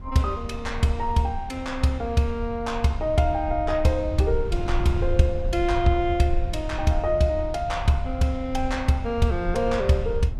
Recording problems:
low-frequency rumble; below 64 Hz, SNR 9 dB
wind noise; below 150 Hz, SNR 17 dB

